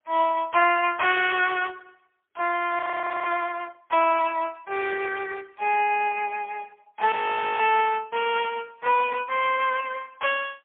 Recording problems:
phone line; 340 Hz to 3.3 kHz, AMR-NB, then MP3
frozen audio; at 3 s and at 7 s
burst of static; at 9.5 s; peak -15 dB vs average level

